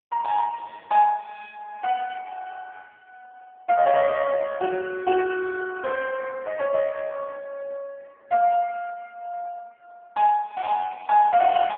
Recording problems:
phone line; 240 Hz to 3 kHz, AMR-NB

